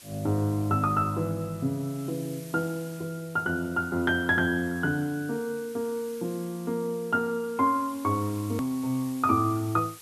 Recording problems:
background hiss; slope +1 dB per octave, SNR 19 dB
click at an edit; at 8.5 s

